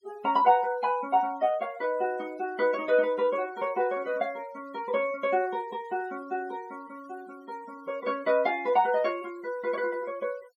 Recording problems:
denoising artefacts; signal-to-artefact ratio 24 dB

